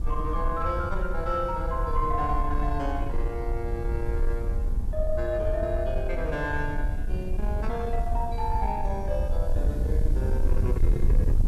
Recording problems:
distortion; soft clipping, signal-to-distortion ratio 11 dB
background hiss; slope +4 dB per octave, SNR 27 dB
rumble; below 64 Hz, SNR -1 dB

